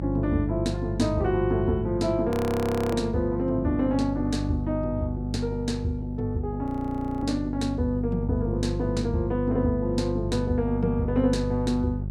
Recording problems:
electrical hum; 50 Hz, harmonics up to 400 Hz, SNR 5 dB
frozen audio; at 2.5 s for 0.5 s and at 6.5 s for 0.5 s

